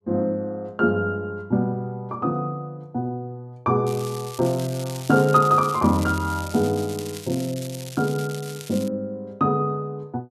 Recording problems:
crackling; from 4 to 9 s; loose cable, SNR 15 dB

